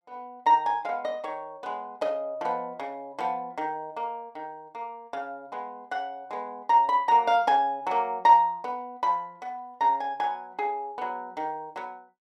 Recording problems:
none

